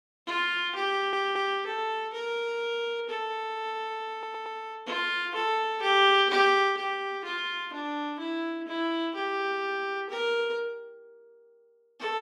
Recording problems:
stutter; at 1 s and at 4 s

